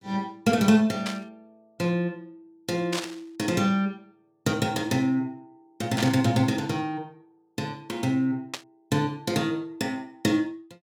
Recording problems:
static burst; 4 times, first at 1 s; peak 0 dB vs average level

